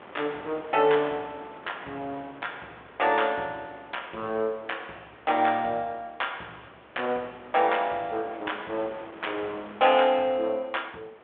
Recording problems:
phone line; 260 Hz to 3.5 kHz, G.726
wind noise; below 1.6 kHz, SNR 19 dB

